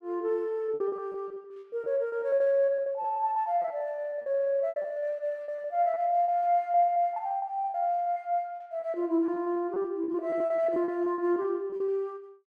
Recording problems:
lost packets; 18% of the sound replaced, filled with repeated pitch periods

